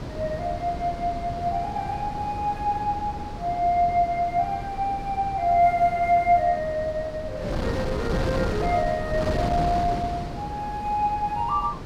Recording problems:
wind noise; below 510 Hz, SNR 7 dB

